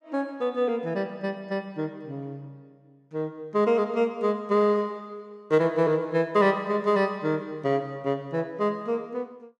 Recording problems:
none

